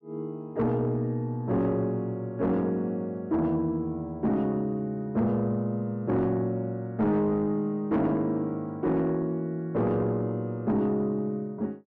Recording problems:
distorted audio; soft clipping, signal-to-distortion ratio 11 dB

